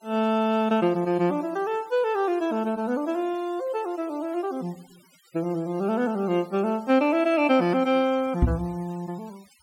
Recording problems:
denoising artefacts; signal-to-artefact ratio 26 dB
microphone thump; at 8.5 s; peak +8 dB vs average level

